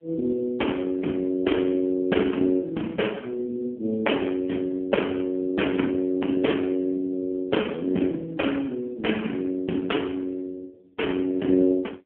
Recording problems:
phone line; 220 Hz to 3.3 kHz, AMR-NB

